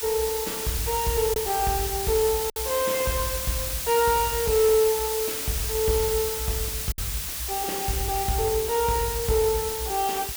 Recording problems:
distortion; soft clipping, signal-to-distortion ratio 8 dB
background hiss; slope +2 dB per octave, SNR 3 dB
lost packets; 1.4% of the sound replaced, filled with silence

